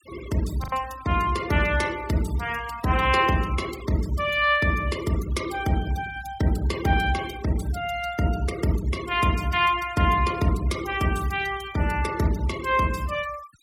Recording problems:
denoising artefacts; signal-to-artefact ratio 17 dB
lost packets; 0.6% of the sound replaced, filled with the last packet

